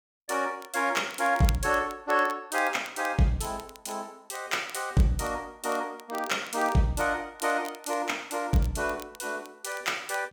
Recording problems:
crackling; vinyl, SNR 19 dB

